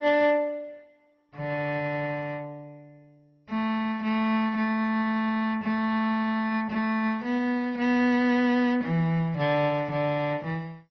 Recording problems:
lossy compression; MP2, then Opus, log-spectral distance 2 dB, nothing above 5.7 kHz

